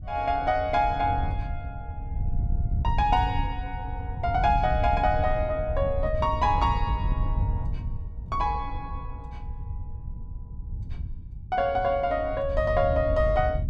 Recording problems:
wind on the microphone; below 96 Hz, SNR 6 dB

